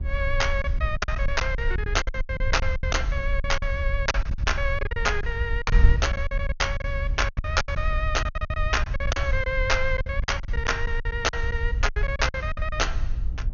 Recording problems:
treble cut off; nothing above 6.7 kHz
wind on the microphone; below 68 Hz, SNR 1 dB
lost packets; 17% of the sound replaced, filled with silence

